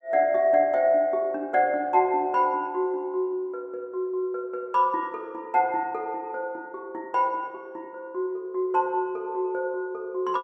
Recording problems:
none

